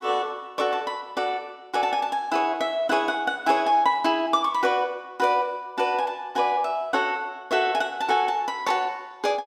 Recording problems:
none

